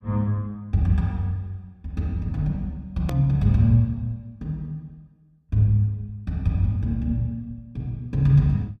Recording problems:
click at an edit; at 3 s

